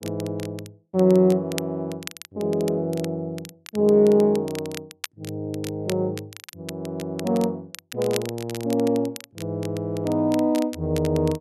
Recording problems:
crackling; vinyl, SNR 16 dB

